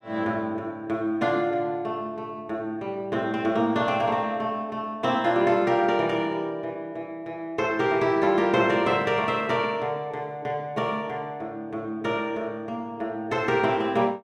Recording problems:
none

